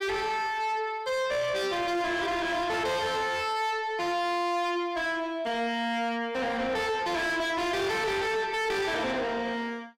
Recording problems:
distortion; soft clipping, signal-to-distortion ratio 6 dB

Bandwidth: 16 kHz